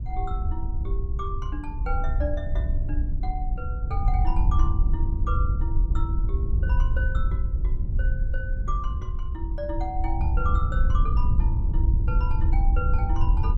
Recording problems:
wind noise; below 68 Hz, SNR -9 dB

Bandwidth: 14.5 kHz